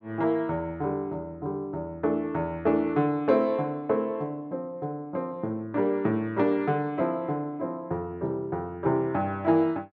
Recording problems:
none

